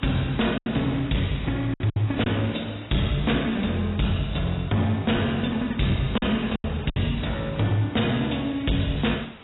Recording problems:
codec artefacts; AAC, log-spectral distance 8 dB, nothing above 3.8 kHz
distortion; hard clipping, signal-to-distortion ratio 10 dB
background hiss; SNR 20 dB
packet loss; 4% of the sound replaced, filled with silence

